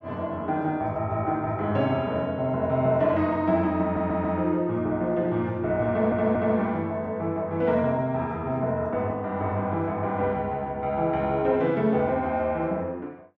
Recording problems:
audio stuttering; at 4 s and at 6 s

